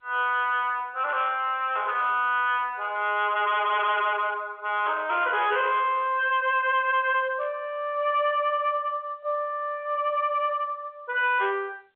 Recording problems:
phone line; 320 Hz to 3.5 kHz, G.711
distortion; hard clipping, uneven, signal-to-distortion ratio 10 dB

